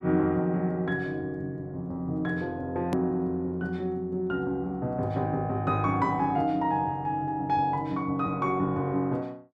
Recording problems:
click at an edit; at 3 s

